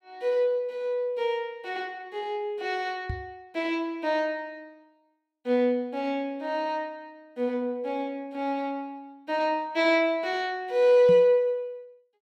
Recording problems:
microphone thump; at 3 s and at 11 s; peak -2 dB vs average level

